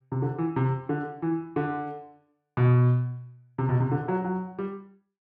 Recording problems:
none

